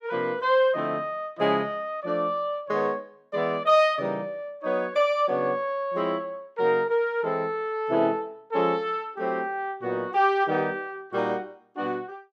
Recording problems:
none

